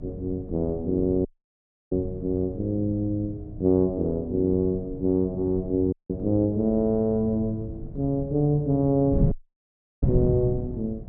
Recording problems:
mains hum; 60 Hz, harmonics up to 720 Hz, SNR 29 dB
wind noise; below 180 Hz, SNR 9 dB
dropout; at 1.5 s for 0.5 s, at 6 s and at 9.5 s for 0.5 s

